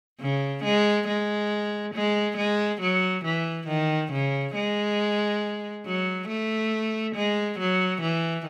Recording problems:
none

